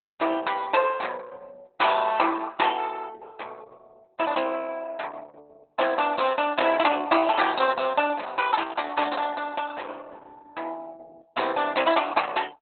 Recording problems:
lossy compression; Opus, log-spectral distance 4 dB, nothing above 4 kHz

